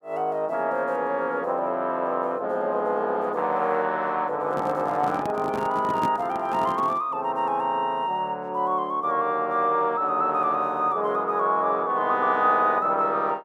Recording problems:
handling noise; from 4.5 to 7 s; peak -1 dB vs average level

